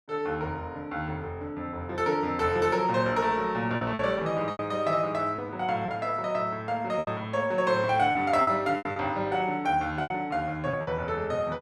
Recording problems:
lost packets; 6% of the sound replaced, filled with repeated pitch periods

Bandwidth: 14.5 kHz